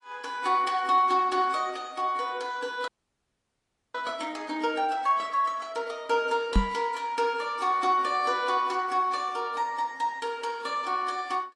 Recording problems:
lossy codec; AAC, log-spectral distance 2 dB
audio freezing; at 3 s for 1 s
microphone thump; at 6.5 s; peak +7 dB vs average level

